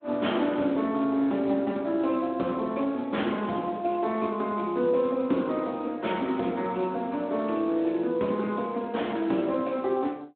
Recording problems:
phone line; 170 Hz to 3.7 kHz, Speex

